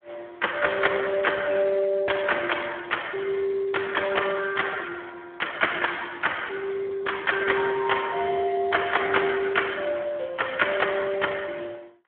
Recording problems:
telephone audio; 280 Hz to 3.4 kHz, Speex

